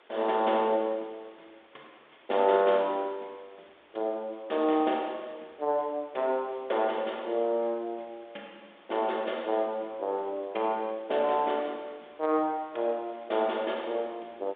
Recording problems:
phone line; 300 Hz to 3.6 kHz, G.726
background hiss; SNR 28 dB

